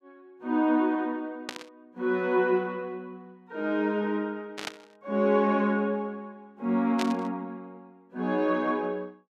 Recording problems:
burst of static; at 1.5 s, at 4.5 s and at 7 s; peak -1 dB vs average level

